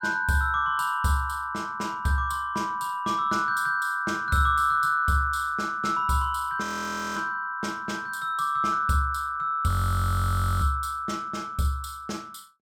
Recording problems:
audio freezing; at 6.5 s for 0.5 s and at 9.5 s for 1 s

